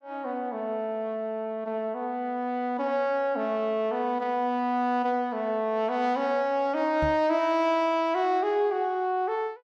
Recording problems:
knock on the microphone; at 7 s; peak -2 dB vs average level

